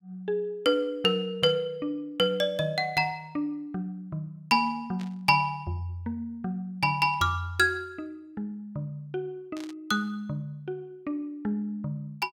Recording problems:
static burst; 4 times, first at 1.5 s; peak -13 dB vs average level

